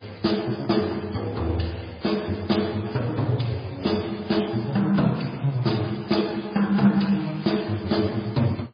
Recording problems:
codec artefacts; Speex, then MP3, log-spectral distance 6 dB

